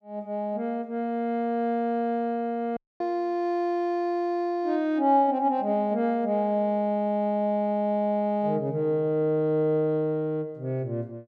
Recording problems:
dropout; at 3 s

